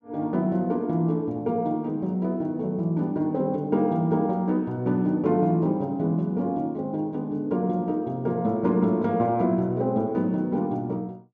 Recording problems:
none

